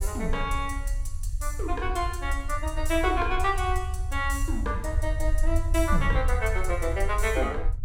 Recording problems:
low-frequency rumble; below 66 Hz, SNR 2 dB

